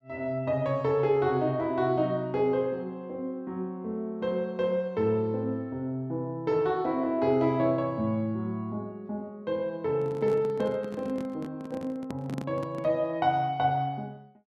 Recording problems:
handling noise; from 10 to 13 s; peak -4 dB vs average level

